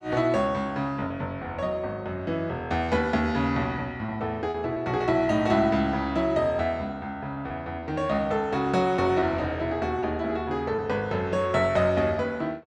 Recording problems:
lost packets; 3% of the sound replaced, filled with repeated pitch periods

